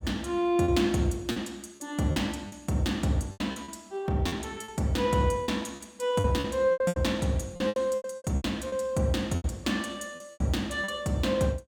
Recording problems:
lost packets; 12% of the sound replaced, filled with repeated pitch periods

